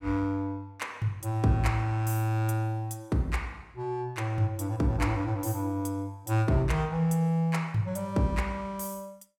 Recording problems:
none

